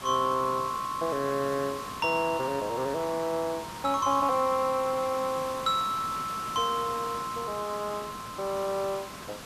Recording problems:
background hiss; slope -3 dB per octave, SNR 12 dB

